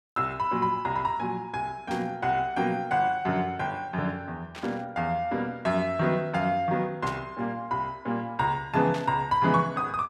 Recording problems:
static burst; 4 times, first at 2 s; peak -8 dB vs average level

